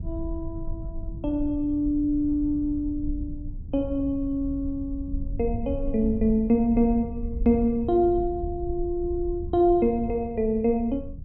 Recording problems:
low-frequency rumble; below 78 Hz, SNR 11 dB

